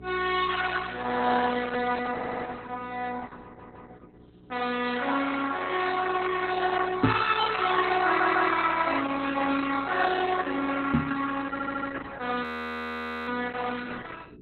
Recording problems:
lossy codec; Opus, log-spectral distance 6 dB, nothing above 4 kHz
hum; 60 Hz, harmonics up to 480 Hz, SNR 22 dB
stutter; 4 times, first at 2 s
microphone bump; at 7 s and at 11 s; peak +8 dB vs average level
audio freezing; at 12 s for 1 s

